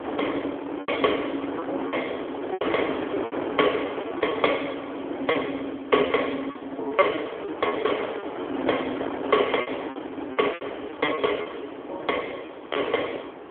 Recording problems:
telephone audio; 240 Hz to 3.4 kHz, AMR-NB
hiss; SNR 24 dB
wind noise; below 860 Hz, SNR 7 dB
lost packets; 11% of the sound replaced, filled with repeated pitch periods

